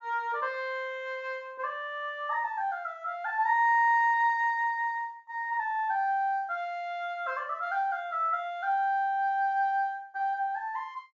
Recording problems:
treble cut off; nothing above 7.2 kHz

